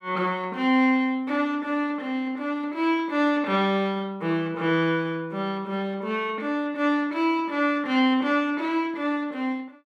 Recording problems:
none

